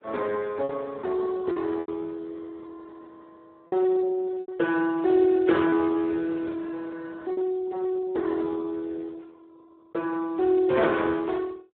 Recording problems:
telephone audio; 280 Hz to 2.9 kHz, Speex
packet loss; 3% of the sound replaced, filled with repeated pitch periods

